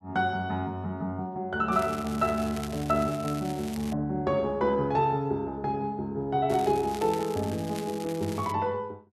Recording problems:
crackle; from 1.5 to 4 s and from 6.5 to 8.5 s; loose cable, SNR 16 dB

